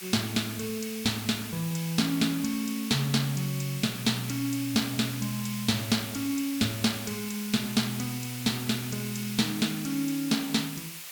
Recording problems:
hiss; SNR 9 dB

